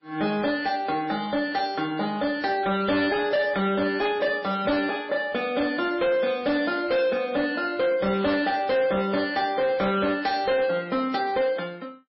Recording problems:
codec artefacts; MP3, log-spectral distance 3 dB, nothing above 4.8 kHz
distortion; hard clipping, signal-to-distortion ratio 10 dB

